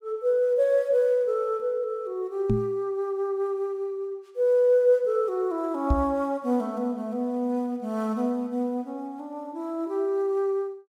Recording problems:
knock on the microphone; at 2.5 s and at 6 s; peak +5 dB vs average level

